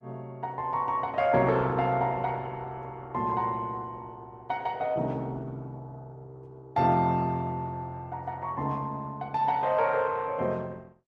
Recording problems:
lossy codec; Opus, log-spectral distance 2 dB

